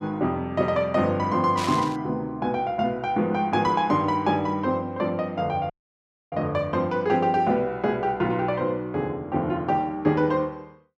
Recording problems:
static burst; at 1.5 s; peak -4 dB vs average level
audio cutting out; at 5.5 s for 0.5 s

